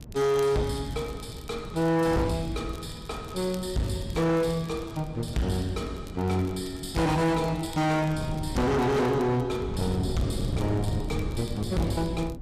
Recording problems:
distorted audio; hard clipping, signal-to-distortion ratio 7 dB
wind on the microphone; below 210 Hz, SNR 10 dB
crackling; vinyl, SNR 25 dB

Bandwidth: 14.5 kHz